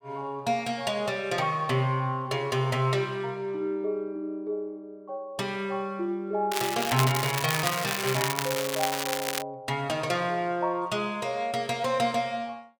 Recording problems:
crackle; from 6.5 to 9.5 s; loose cable, SNR 2 dB

